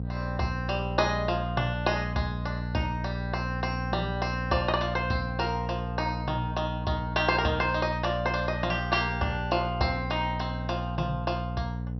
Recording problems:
treble missing; nothing above 5.8 kHz
electrical hum; 60 Hz, harmonics up to 540 Hz, SNR 4 dB

